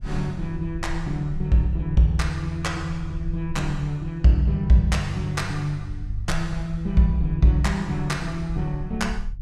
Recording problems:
rumble; below 60 Hz, SNR 12 dB

